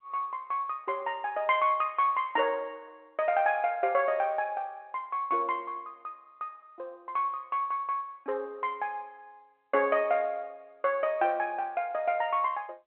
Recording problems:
phone line; 280 Hz to 3.3 kHz, G.711

